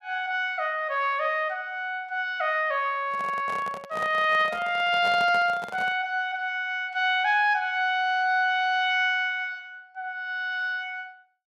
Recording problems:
microphone handling noise; from 3 to 6 s; peak -7 dB vs average level

